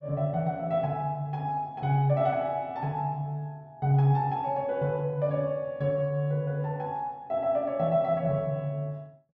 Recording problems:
none

